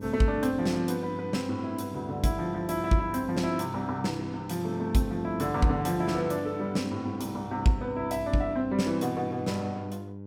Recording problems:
electrical hum; 50 Hz, harmonics up to 600 Hz, SNR 12 dB

